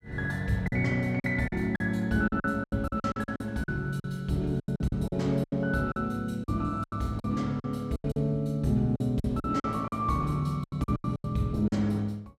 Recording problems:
packet loss; 14% of the sound replaced, filled with silence

